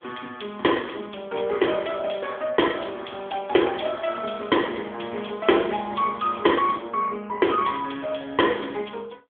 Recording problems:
telephone audio; 220 Hz to 3.4 kHz, AMR-NB

